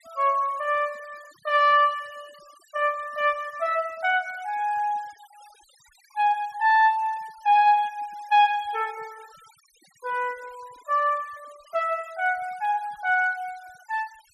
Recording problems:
noise reduction artefacts; signal-to-artefact ratio 26 dB

